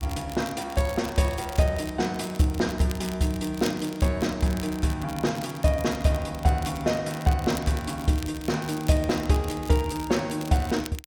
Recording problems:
crackle; vinyl, SNR 17 dB

